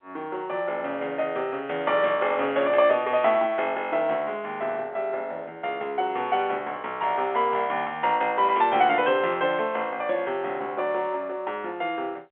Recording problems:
telephone audio; 320 Hz to 3.5 kHz, G.711

